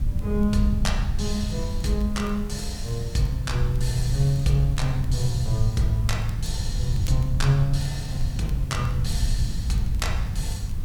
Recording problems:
hum; 60 Hz, harmonics up to 300 Hz, SNR 24 dB
hiss; slope -4 dB per octave, SNR 22 dB
low-frequency rumble; below 96 Hz, SNR 2 dB
crackling; vinyl, SNR 28 dB

